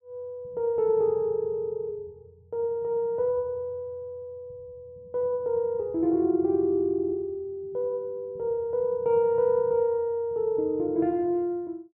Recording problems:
none

